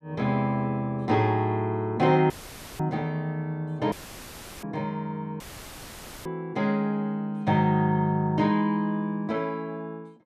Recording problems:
audio cutting out; at 2.5 s for 0.5 s, at 4 s for 0.5 s and at 5.5 s for 1 s; filled with static

